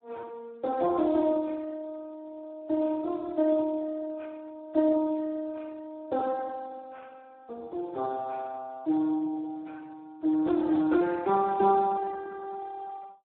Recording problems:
phone line; 240 Hz to 2 kHz, Speex

